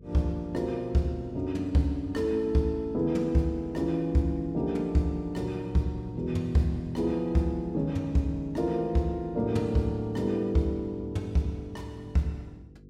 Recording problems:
hum; 50 Hz, harmonics up to 500 Hz, SNR 23 dB

